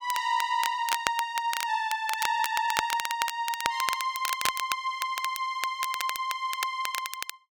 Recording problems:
crackle; vinyl, SNR 5 dB

